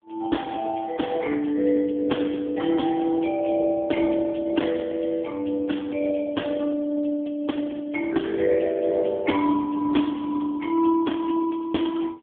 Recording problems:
phone line; 240 Hz to 3.4 kHz, AMR-NB

